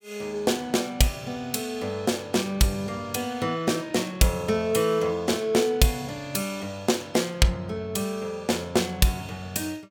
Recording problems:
none

